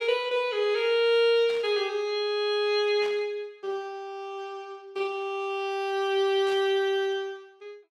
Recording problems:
static burst; at 1.5 s, at 3 s and at 6.5 s; peak -12 dB vs average level

